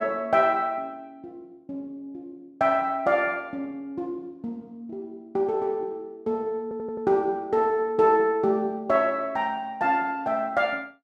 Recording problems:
stutter; at 6.5 s

